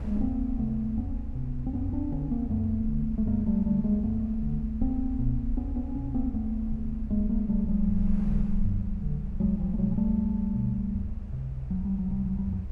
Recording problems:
low-frequency rumble; below 66 Hz, SNR 8 dB
wind on the microphone; below 180 Hz, SNR 19 dB

